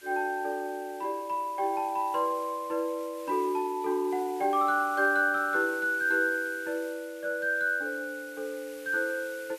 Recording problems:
hiss; SNR 21 dB

